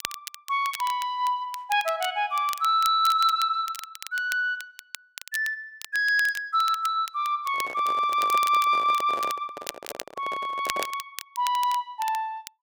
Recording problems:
crackle; vinyl, SNR 14 dB
handling noise; from 7.5 to 11 s; peak -3 dB vs average level

